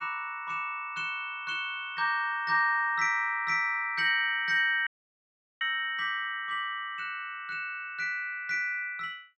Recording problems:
audio cutting out; at 5 s for 0.5 s

